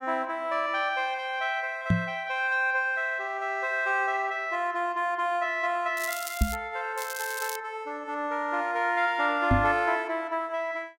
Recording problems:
knock on the microphone; at 2 s, at 6.5 s and at 9.5 s; peak +7 dB vs average level
crackle; at 6 s and at 7 s; loose cable, SNR 10 dB

